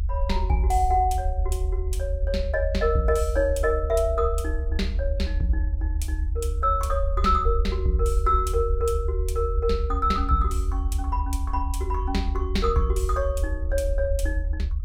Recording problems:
low-frequency rumble; below 74 Hz, strongest tone 42 Hz, SNR 1 dB

